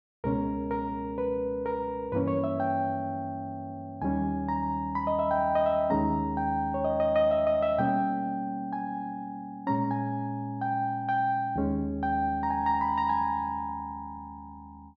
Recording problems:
none

